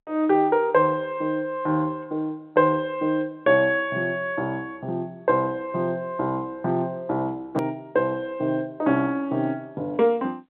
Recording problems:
telephone audio; 170 Hz to 3.7 kHz, G.711
hard cut with a click; at 7.5 s

